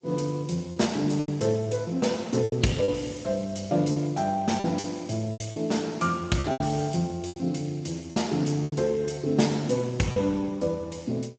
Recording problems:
lossy compression; G.722, then Speex, log-spectral distance 6 dB, nothing above 7.8 kHz
lost packets; 7% of the sound replaced, filled with repeated pitch periods

